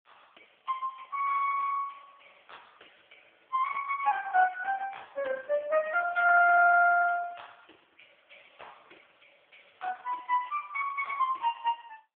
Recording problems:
telephone audio; 260 Hz to 2.9 kHz, AMR-NB

